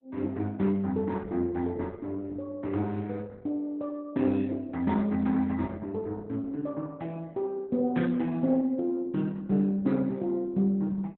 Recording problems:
codec artefacts; Opus, log-spectral distance 2 dB, nothing above 3.9 kHz

